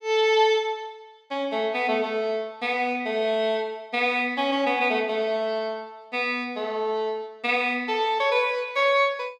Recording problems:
none

